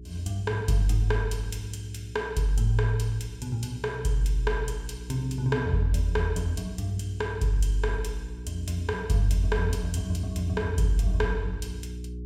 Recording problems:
hum; 60 Hz, harmonics up to 420 Hz, SNR 12 dB

